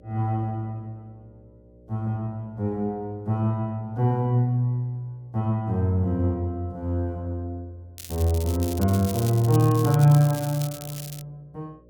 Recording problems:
hum; 60 Hz, harmonics up to 600 Hz, SNR 30 dB
crackle; from 8 to 11 s; loose cable, SNR 13 dB

